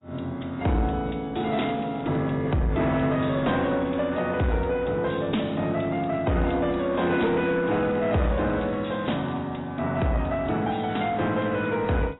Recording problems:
lossy compression; AAC, log-spectral distance 5 dB, nothing above 3.8 kHz
distortion; soft clipping, signal-to-distortion ratio 10 dB
crackle; at 1.5 s and from 6 to 9.5 s; loose cable, SNR 30 dB

